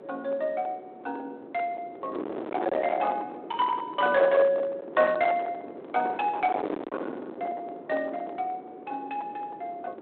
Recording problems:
telephone audio; 300 Hz to 3.7 kHz, G.726
distorted audio; hard clipping, signal-to-distortion ratio 7 dB
wind on the microphone; below 890 Hz, SNR 9 dB

